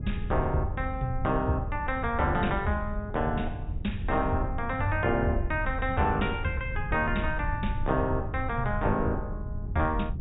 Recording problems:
low-pass filter; nothing above 4 kHz
rumble; below 90 Hz, SNR 9 dB
wind noise; below 110 Hz, SNR 9 dB

